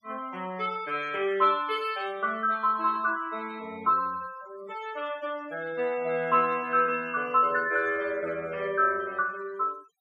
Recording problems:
denoising artefacts; signal-to-artefact ratio 22 dB

